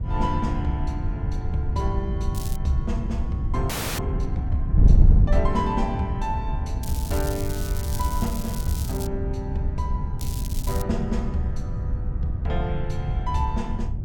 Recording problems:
wind noise; below 96 Hz, SNR -3 dB
crackle; at 2.5 s, from 7 to 9 s and at 10 s; loose cable, SNR 8 dB
audio freezing; at 3.5 s

